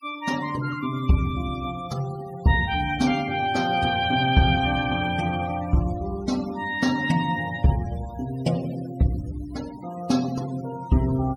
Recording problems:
denoising artefacts; signal-to-artefact ratio 17 dB

